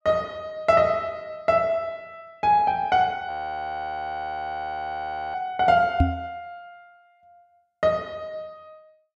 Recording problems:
frozen audio; at 3.5 s for 2 s
microphone thump; at 6 s; peak +8 dB vs average level

